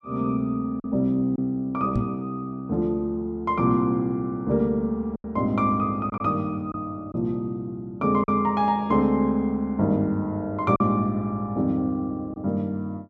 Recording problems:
packet loss; 2% of the sound replaced, filled with silence
microphone bump; at 2 s; peak +3 dB vs average level

